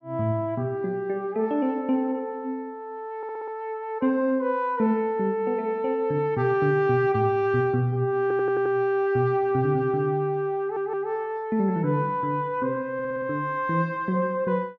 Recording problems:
stutter; 4 times, first at 3 s

